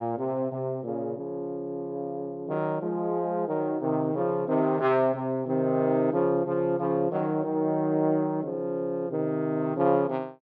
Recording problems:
none

